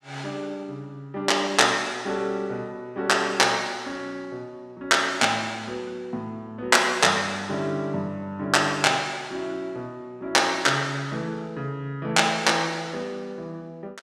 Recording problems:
none

